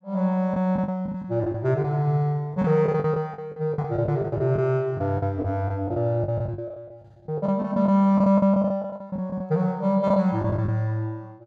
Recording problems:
lost packets; 14% of the sound replaced, filled with the last packet

